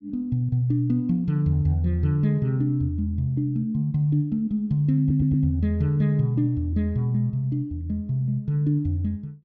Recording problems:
stutter; at 5 s

